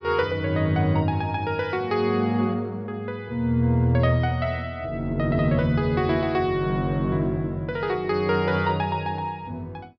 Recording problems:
low-pass filter; nothing above 5.5 kHz

